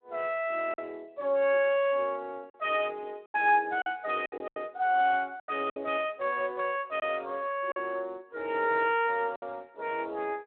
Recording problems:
phone line; 300 Hz to 3.2 kHz, Speex
lost packets; 5% of the sound replaced, filled with silence

